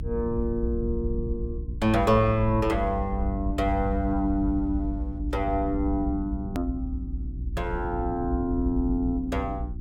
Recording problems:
hum; 60 Hz, harmonics up to 360 Hz, SNR 13 dB
low-frequency rumble; below 66 Hz, SNR 6 dB
click at an edit; at 6.5 s

